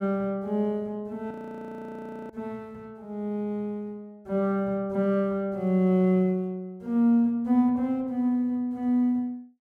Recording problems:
frozen audio; at 1.5 s for 1 s

